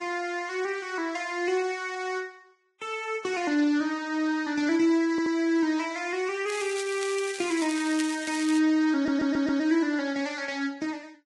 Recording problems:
codec artefacts; Vorbis, log-spectral distance 3 dB
stutter; at 5 s and at 9 s
crackle; from 6.5 to 8.5 s; loose cable, SNR 11 dB

